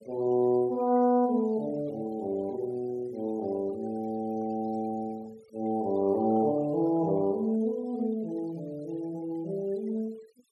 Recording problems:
denoising artefacts; signal-to-artefact ratio 25 dB

